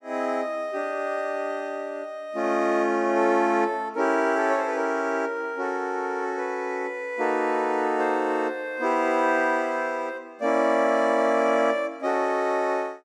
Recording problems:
none

